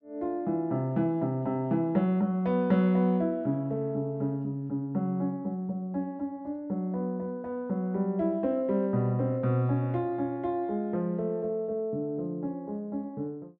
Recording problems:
none

